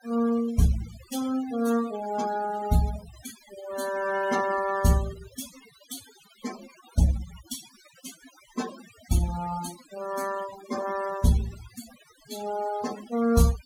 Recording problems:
denoising artefacts; signal-to-artefact ratio 15 dB

